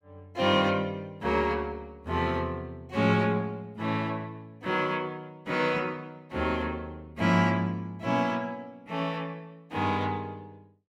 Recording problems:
none

